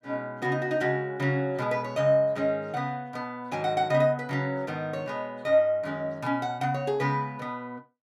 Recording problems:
none

